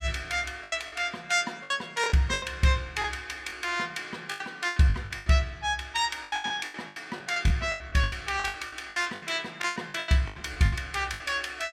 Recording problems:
packet loss; 17% of the sound replaced, filled with the last packet

